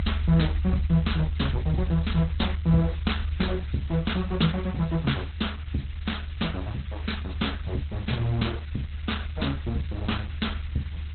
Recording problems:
codec artefacts; Opus, log-spectral distance 6 dB, nothing above 4.1 kHz
hiss; SNR 20 dB
low-frequency rumble; below 76 Hz, strongest tone 76 Hz, SNR 5 dB

